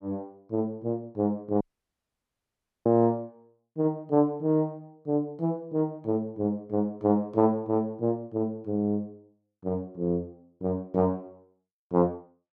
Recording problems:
audio cutting out; at 1.5 s for 1 s

